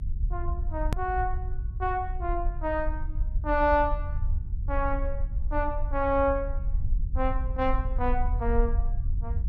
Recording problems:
rumble; below 60 Hz, SNR 2 dB
hard cut with a click; at 1 s

